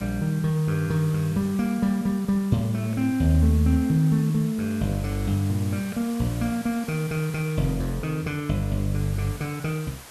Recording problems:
background hiss; slope -2 dB per octave, SNR 18 dB

